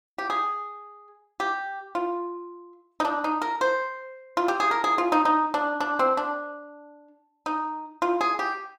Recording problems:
none

